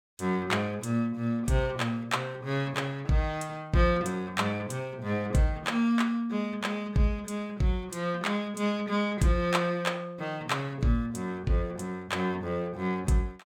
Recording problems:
none

